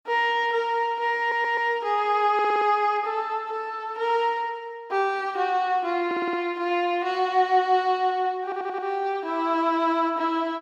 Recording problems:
stutter; 4 times, first at 1 s

